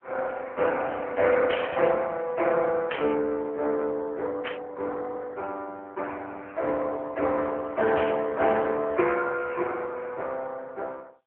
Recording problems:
phone line; 300 Hz to 3.2 kHz, AMR-NB
burst of static; 4 times, first at 1.5 s; peak -1 dB vs average level

